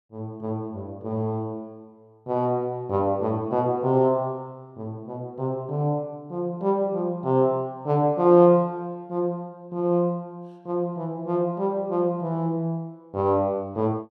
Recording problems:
none

